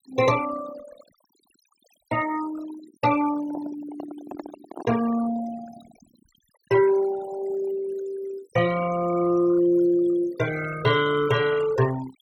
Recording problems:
denoising artefacts; signal-to-artefact ratio 14 dB
handling noise; from 3.5 to 5 s; peak -8 dB vs average level

